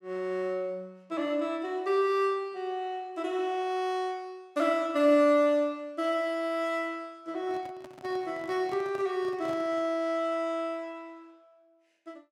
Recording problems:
handling noise; from 7.5 to 10 s; peak -11 dB vs average level

